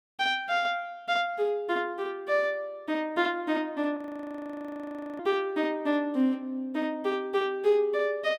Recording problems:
frozen audio; at 4 s for 1 s

